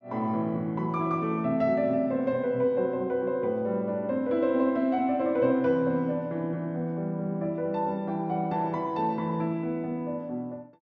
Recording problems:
none

